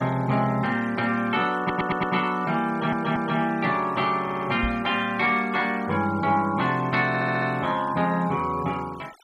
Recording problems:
noise reduction artefacts; signal-to-artefact ratio 22 dB
stutter; 4 times, first at 1.5 s
microphone bump; at 4.5 s; peak -3 dB vs average level

